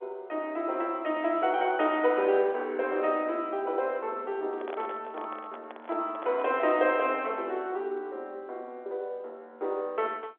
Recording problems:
telephone audio; 280 Hz to 3.7 kHz, G.711
microphone handling noise; from 4.5 to 7 s; peak -5 dB vs average level

